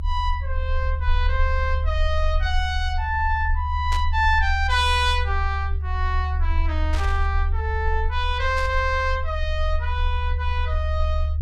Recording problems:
rumble; below 76 Hz, SNR 0 dB
static burst; at 4 s, at 7 s and at 8.5 s; peak -5 dB vs average level

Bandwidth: 16 kHz